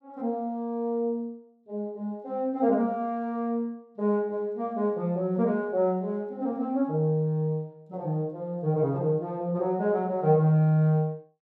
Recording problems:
none

